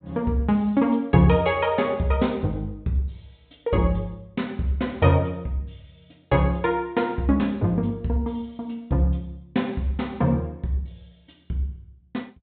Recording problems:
low-pass filter; nothing above 4 kHz

